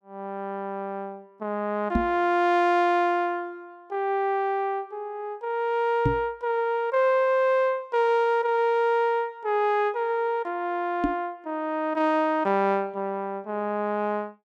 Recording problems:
microphone bump; at 2 s, at 6 s and at 11 s; peak +4 dB vs average level

